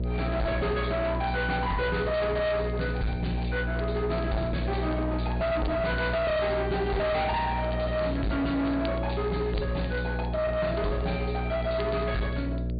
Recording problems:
treble cut off; nothing above 4.7 kHz
distortion; hard clipping, signal-to-distortion ratio 7 dB
hum; 60 Hz, harmonics up to 660 Hz, SNR 3 dB
crackle; vinyl, SNR 24 dB

